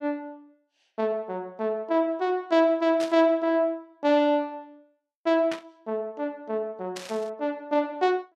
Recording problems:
static burst; at 3 s, at 5.5 s and at 7 s; peak -6 dB vs average level

